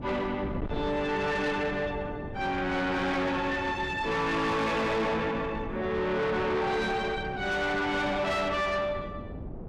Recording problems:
distortion; soft clipping, signal-to-distortion ratio 7 dB
wind noise; below 410 Hz, SNR 11 dB

